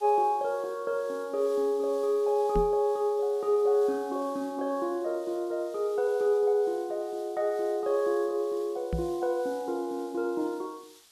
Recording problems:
background hiss; slope +2 dB per octave, SNR 25 dB
knock on the microphone; at 2.5 s and at 9 s; peak 0 dB vs average level

